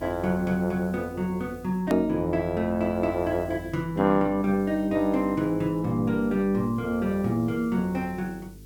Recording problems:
hum; 50 Hz, harmonics up to 450 Hz, SNR 20 dB
background hiss; SNR 29 dB
hard cut with a click; at 2 s

